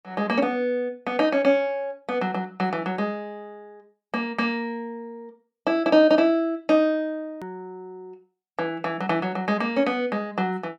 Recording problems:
edit click; at 7.5 s

